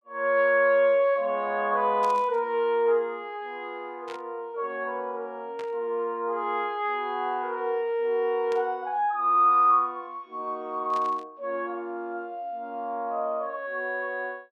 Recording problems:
static burst; 5 times, first at 2 s; peak -12 dB vs average level

